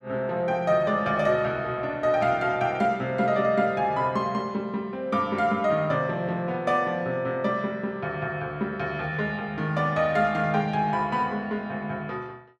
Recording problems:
none

